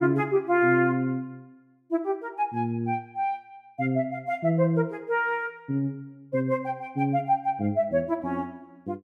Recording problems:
none

